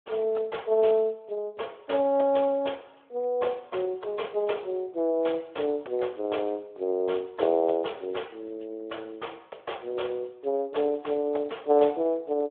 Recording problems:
telephone audio; 340 Hz to 3.4 kHz, Speex

